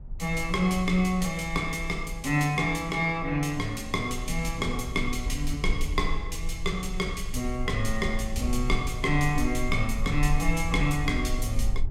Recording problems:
rumble; below 50 Hz, SNR 7 dB

